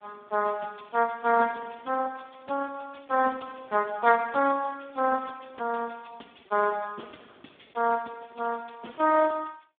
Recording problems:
phone line; 300 Hz to 2.3 kHz, Speex

